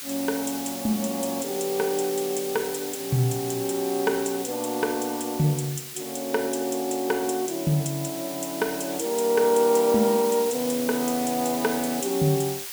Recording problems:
hiss; slope +2 dB per octave, SNR 8 dB

